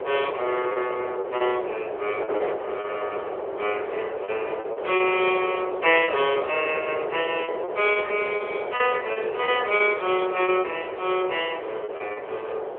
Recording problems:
phone line; 320 Hz to 3.4 kHz, AMR-NB
wind noise; below 700 Hz, SNR 6 dB
lost packets; 8% of the sound replaced, filled with repeated pitch periods

